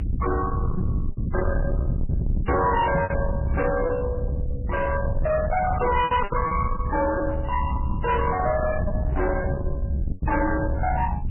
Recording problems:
lossy codec; MP3, log-spectral distance 3 dB, nothing above 3 kHz
distorted audio; soft clipping, signal-to-distortion ratio 7 dB
low-frequency rumble; below 180 Hz, SNR 3 dB
lost packets; 6% of the sound replaced, filled with repeated pitch periods
microphone bump; at 3 s; peak +4 dB vs average level

